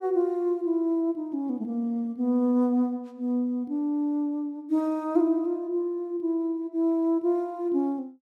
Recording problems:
none

